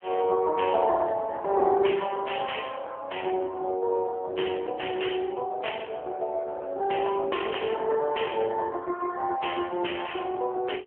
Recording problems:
phone line; 320 Hz to 3.2 kHz, AMR-NB

